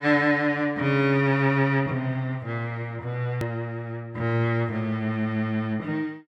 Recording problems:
hard cut with a click; at 3.5 s

